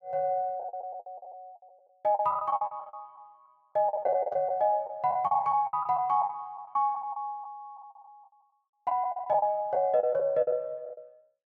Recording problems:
packet loss; 15% of the sound replaced, filled with the last packet

